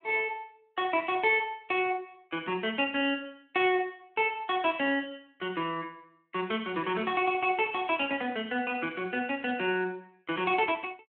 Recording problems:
telephone audio; 240 Hz to 3.5 kHz, Speex

